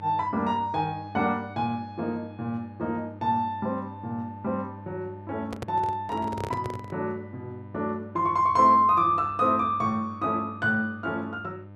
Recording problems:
hum; 50 Hz, harmonics up to 1.2 kHz, SNR 17 dB
handling noise; from 5.5 to 7 s; peak -3 dB vs average level

